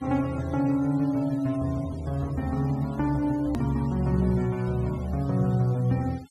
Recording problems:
denoising artefacts; signal-to-artefact ratio 24 dB
hard cut with a click; at 3.5 s

